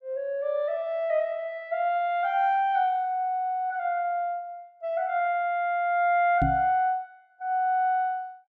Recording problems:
microphone thump; at 6.5 s; peak +2 dB vs average level

